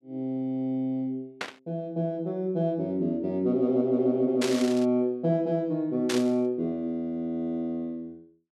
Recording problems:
static burst; at 1.5 s, at 4.5 s and at 6 s; peak 0 dB vs average level

